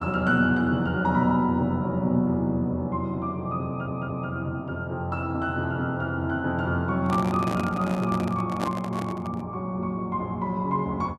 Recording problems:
audio stuttering; at 3.5 s
microphone handling noise; from 7 to 9.5 s; peak 0 dB vs average level

